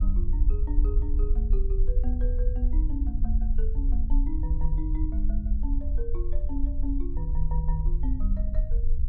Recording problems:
low-frequency rumble; below 50 Hz, SNR -10 dB

